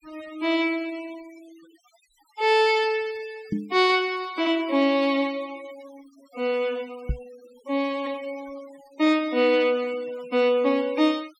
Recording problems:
denoising artefacts; signal-to-artefact ratio 24 dB
microphone bump; at 3.5 s and at 7 s; peak 0 dB vs average level

